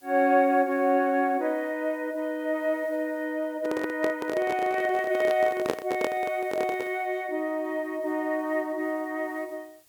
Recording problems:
hiss; slope 0 dB per octave, SNR 29 dB
handling noise; from 3.5 to 7 s; peak +4 dB vs average level

